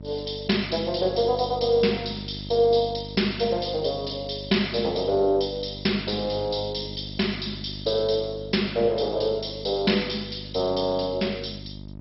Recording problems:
lossy compression; MP2, log-spectral distance 10 dB, nothing above 5.5 kHz
mains hum; 50 Hz, harmonics up to 650 Hz, SNR 14 dB

